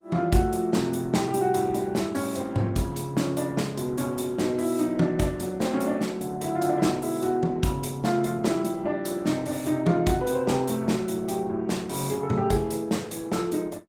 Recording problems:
codec artefacts; Opus, log-spectral distance 4 dB

